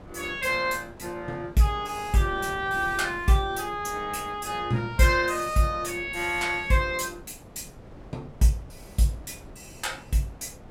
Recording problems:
wind noise; below 510 Hz, SNR 19 dB

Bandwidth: 16 kHz